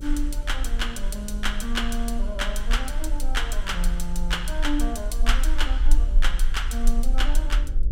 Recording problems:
hum; 50 Hz, harmonics up to 600 Hz, SNR 11 dB
low-frequency rumble; below 38 Hz, strongest tone 20 Hz, SNR -2 dB

